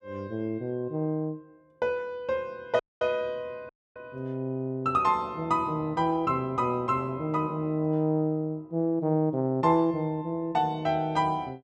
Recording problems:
audio cutting out; at 3 s and at 3.5 s

